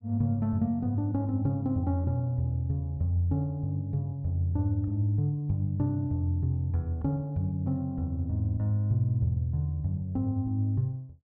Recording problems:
none

